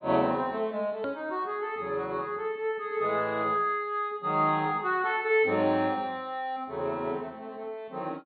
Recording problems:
treble missing; nothing above 4.4 kHz
hard cut with a click; at 1 s

